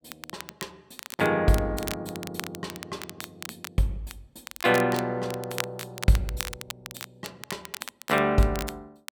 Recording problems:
crackle; vinyl, SNR 11 dB

